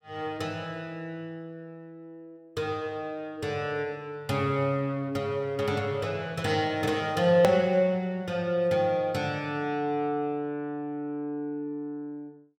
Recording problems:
edit click; at 7.5 s

